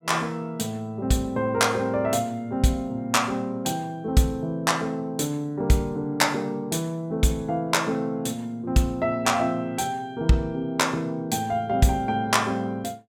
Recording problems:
none

